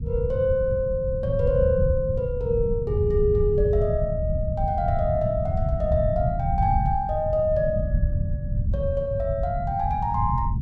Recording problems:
low-frequency rumble; below 130 Hz, SNR 2 dB

